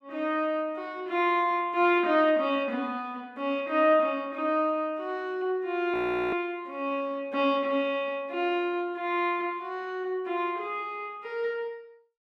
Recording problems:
audio freezing; at 6 s

